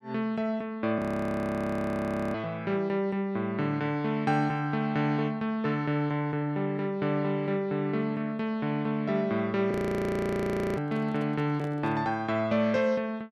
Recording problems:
frozen audio; at 1 s for 1.5 s and at 9.5 s for 1 s
microphone handling noise; from 11 to 12 s; peak -9 dB vs average level

